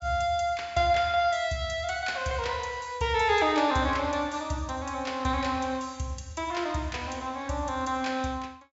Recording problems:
treble missing; nothing above 8 kHz

